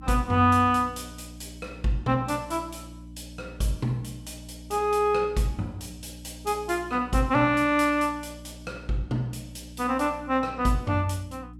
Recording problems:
hum; 60 Hz, harmonics up to 300 Hz, SNR 18 dB

